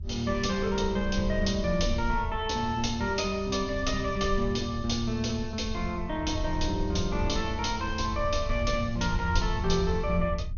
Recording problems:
low-pass filter; nothing above 6.6 kHz
low-frequency rumble; below 82 Hz, SNR 6 dB

